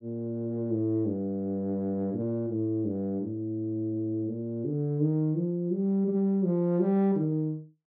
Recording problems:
none

